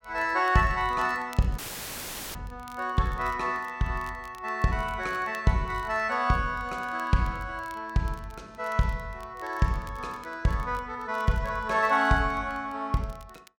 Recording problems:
crackling; vinyl, SNR 27 dB
dropout; at 1.5 s for 1 s; filled with static

